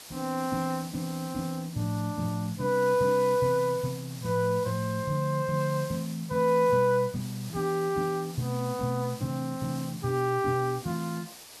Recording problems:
background hiss; SNR 16 dB
crackling; from 7 to 9 s and at 9.5 s; loose cable, SNR 30 dB

